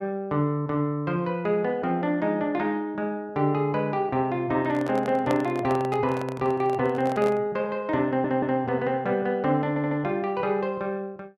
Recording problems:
microphone handling noise; from 4.5 to 7.5 s; peak -1 dB vs average level
audio stuttering; at 8 s and at 9.5 s

